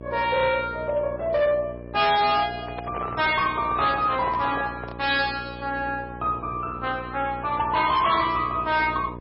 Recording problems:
lossy compression; MP3, log-spectral distance 3 dB, nothing above 5.3 kHz
distortion; hard clipping, uneven, signal-to-distortion ratio 11 dB
hum; 60 Hz, harmonics up to 1.1 kHz, SNR 15 dB
microphone handling noise; from 2.5 to 5 s; peak -6 dB vs average level

